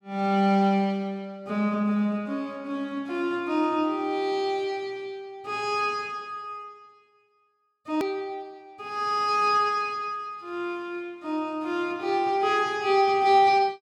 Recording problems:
click at an edit; at 8 s

